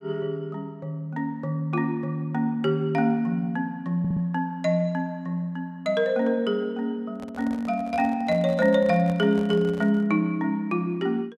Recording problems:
audio stuttering; at 4 s
handling noise; from 7 to 10 s; peak -10 dB vs average level

